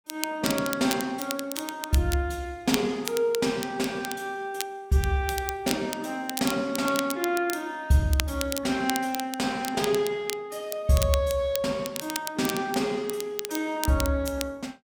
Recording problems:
crackling; vinyl, SNR 8 dB

